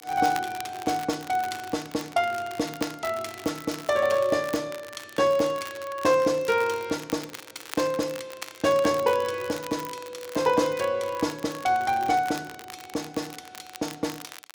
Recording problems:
crackle; vinyl, SNR 16 dB

